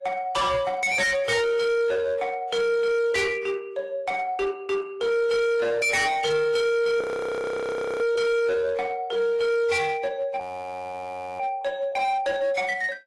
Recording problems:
lossy codec; AAC, log-spectral distance 2 dB, nothing above 11.6 kHz
distortion; hard clipping, uneven, signal-to-distortion ratio 7 dB
audio freezing; at 7 s for 1 s and at 10 s for 1 s

